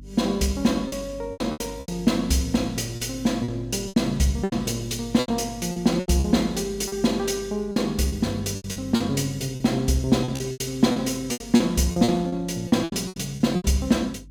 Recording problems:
electrical hum; 50 Hz, harmonics up to 300 Hz, SNR 19 dB
packet loss; 13% of the sound replaced, filled with repeated pitch periods

